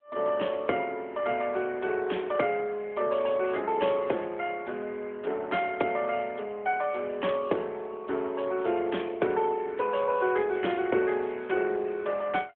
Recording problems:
phone line; 260 Hz to 3.3 kHz, AMR-NB

